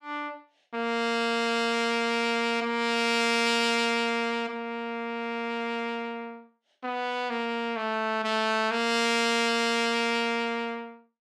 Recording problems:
none

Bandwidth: 15 kHz